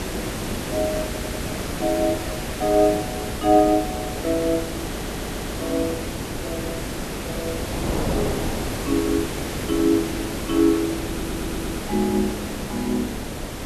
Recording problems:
hum; 50 Hz, harmonics up to 600 Hz, SNR 19 dB
hiss; slope -4 dB per octave, SNR 6 dB
wind on the microphone; below 560 Hz, SNR 9 dB
stutter; at 1 s, at 5 s and at 11 s

